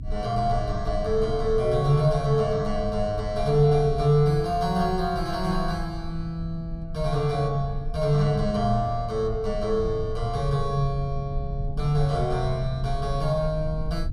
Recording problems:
rumble; below 72 Hz, strongest tone 24 Hz, SNR 10 dB

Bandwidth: 15 kHz